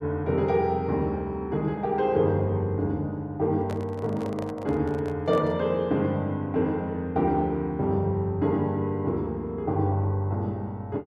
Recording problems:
handling noise; from 3.5 to 5.5 s; peak -8 dB vs average level

